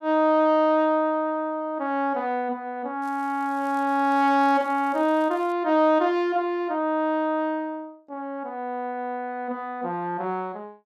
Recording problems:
crackle; from 3 to 5.5 s; loose cable, SNR 30 dB

